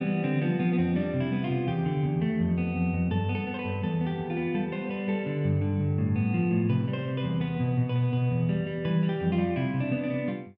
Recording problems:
none

